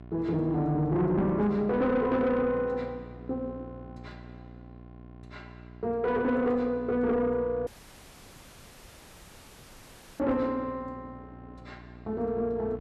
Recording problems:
distorted audio; soft clipping, signal-to-distortion ratio 11 dB
mains hum; 60 Hz, harmonics up to 1.4 kHz, SNR 18 dB
dropout; at 7.5 s for 2.5 s

